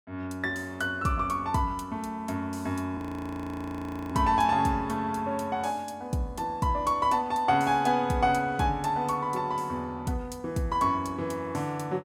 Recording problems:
audio freezing; at 3 s for 1 s

